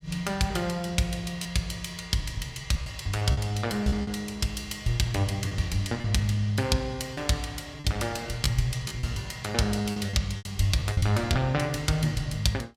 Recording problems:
lost packets; 7% of the sound replaced, filled with repeated pitch periods

